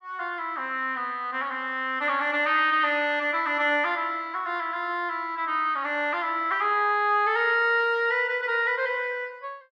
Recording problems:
none

